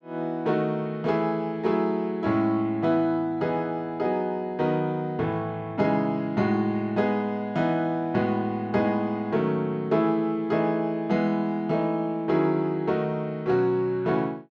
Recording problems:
none

